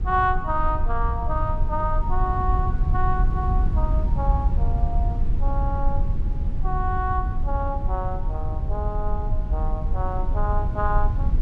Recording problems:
rumble; below 70 Hz, SNR -3 dB

